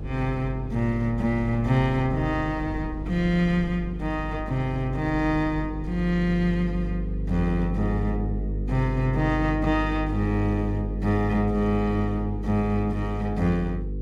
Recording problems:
hum; 50 Hz, harmonics up to 500 Hz, SNR 6 dB
wind noise; below 190 Hz, SNR 18 dB

